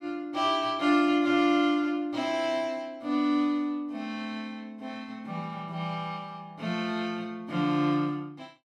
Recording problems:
none

